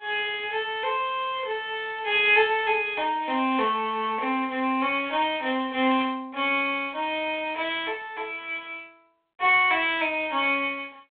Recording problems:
telephone audio; 280 Hz to 3.6 kHz, G.726

